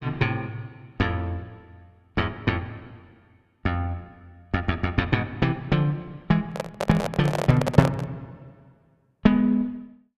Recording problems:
handling noise; from 6.5 to 8 s; peak +3 dB vs average level

